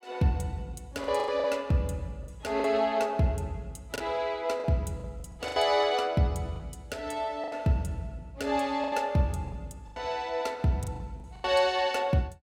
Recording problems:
lost packets; 8% of the sound replaced, filled with the last packet

